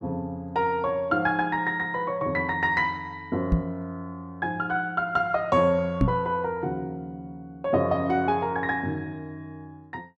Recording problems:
microphone bump; at 3.5 s and at 6 s; peak +8 dB vs average level

